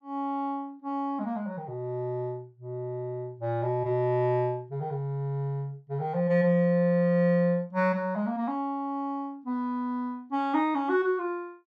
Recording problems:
none

